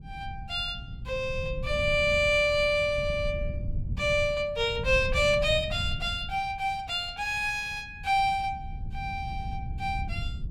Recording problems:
wind noise; below 120 Hz, SNR 10 dB

